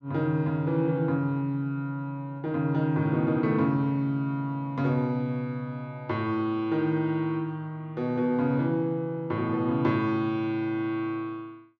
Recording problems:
none

